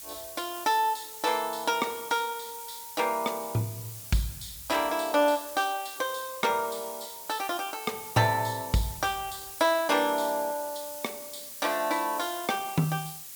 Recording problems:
hiss; slope +2 dB per octave, SNR 11 dB

